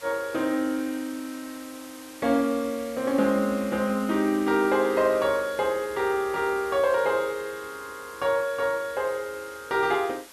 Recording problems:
background hiss; slope 0 dB per octave, SNR 19 dB

